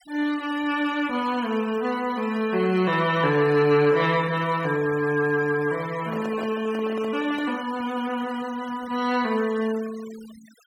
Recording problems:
noise reduction artefacts; signal-to-artefact ratio 19 dB
handling noise; from 6 to 7.5 s; peak -8 dB vs average level

